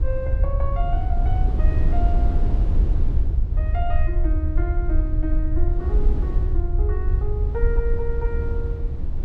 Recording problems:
low-frequency rumble; below 66 Hz, SNR -9 dB
wind noise; below 320 Hz, SNR 3 dB

